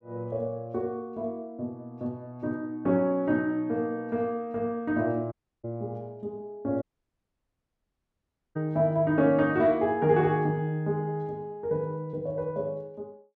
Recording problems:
audio cutting out; at 5.5 s and at 7 s for 1.5 s

